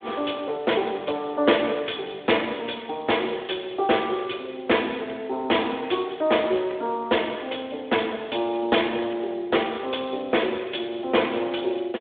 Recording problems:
telephone audio; 300 Hz to 3.6 kHz, Speex

